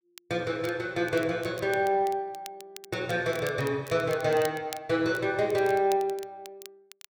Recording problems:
crackle; vinyl, SNR 19 dB

